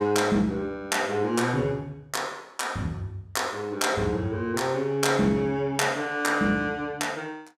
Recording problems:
none

